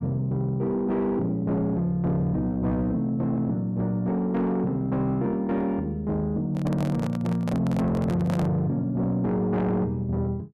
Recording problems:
distortion; soft clipping, signal-to-distortion ratio 11 dB
handling noise; from 6.5 to 8.5 s; peak -2 dB vs average level

